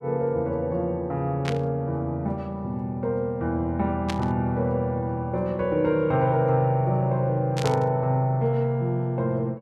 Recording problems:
burst of static; at 1.5 s, at 4 s and at 7.5 s; peak -2 dB vs average level

